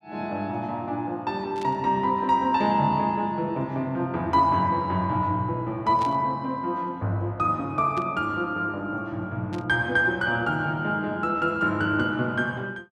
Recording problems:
static burst; 4 times, first at 1.5 s; peak -11 dB vs average level

